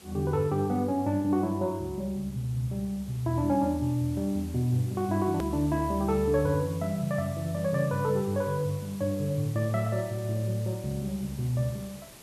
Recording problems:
hiss; slope -3 dB per octave, SNR 20 dB
edit click; at 5.5 s

